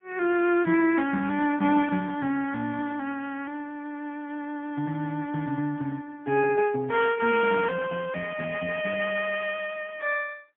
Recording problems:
phone line; 170 Hz to 3.4 kHz, AMR-NB, then MP3

